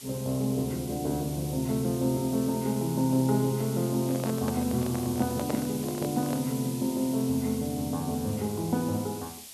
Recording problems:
background hiss; SNR 12 dB
microphone handling noise; from 4 to 6.5 s; peak -1 dB vs average level

